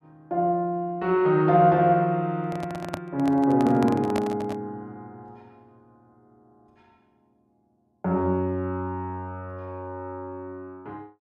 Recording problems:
microphone handling noise; from 2.5 to 4.5 s; peak -3 dB vs average level

